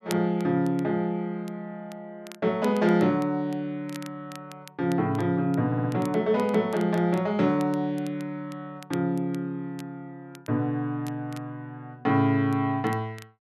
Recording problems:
crackling; vinyl, SNR 24 dB
audio stuttering; at 5.5 s

